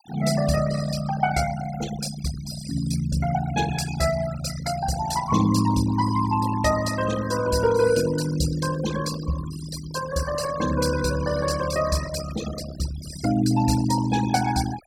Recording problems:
denoising artefacts; signal-to-artefact ratio 11 dB

